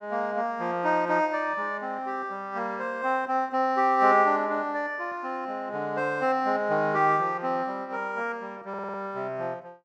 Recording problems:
stutter; at 8.5 s

